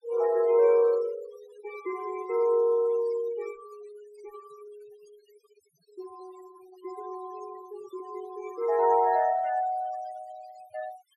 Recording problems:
denoising artefacts; signal-to-artefact ratio 21 dB

